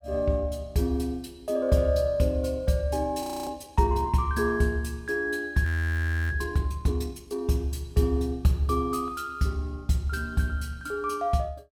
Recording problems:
audio freezing; at 3 s and at 5.5 s for 0.5 s

